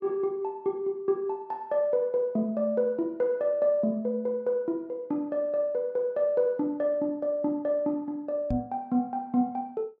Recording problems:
microphone bump; at 8.5 s; peak -2 dB vs average level

